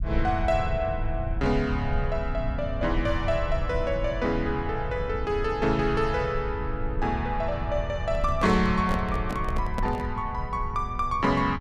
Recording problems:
rumble; below 92 Hz, SNR 6 dB
handling noise; from 8 to 10 s; peak -1 dB vs average level

